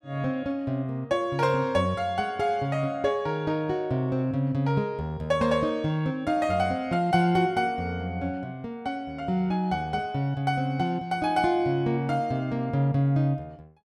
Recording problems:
none

